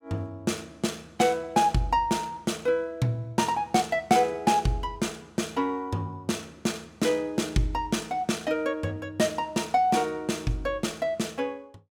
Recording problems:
none

